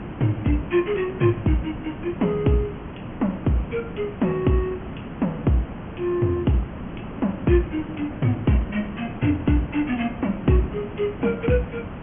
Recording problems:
treble missing; nothing above 3.2 kHz
hiss; SNR 11 dB

